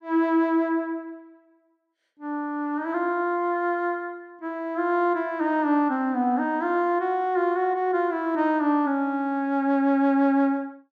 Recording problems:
none

